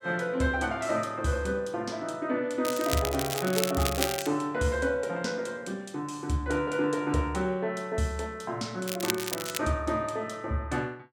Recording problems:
crackling; from 2.5 to 4.5 s and at 9 s; loose cable, SNR 4 dB

